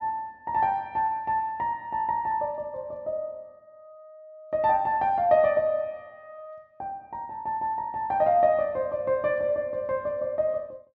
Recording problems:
low-pass filter; nothing above 8 kHz

